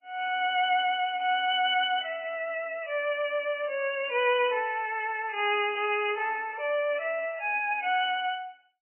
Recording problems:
lossy compression; MP3, log-spectral distance 6 dB, nothing above 2.9 kHz

